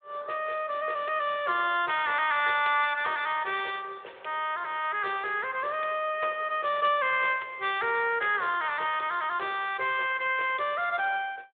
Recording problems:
phone line; 340 Hz to 3.6 kHz, Speex

